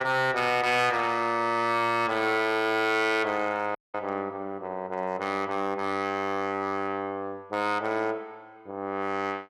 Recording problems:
distorted audio; hard clipping, signal-to-distortion ratio 11 dB
audio cutting out; at 4 s

